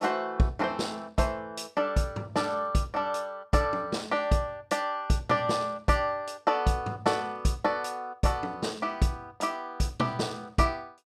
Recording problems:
none

